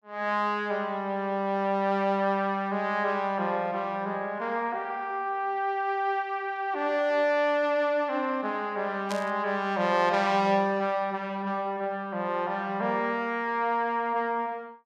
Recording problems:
static burst; at 9 s; peak -5 dB vs average level

